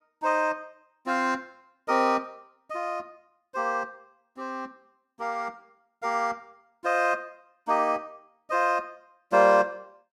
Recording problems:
none

